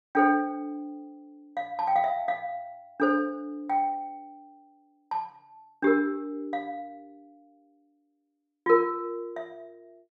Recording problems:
none

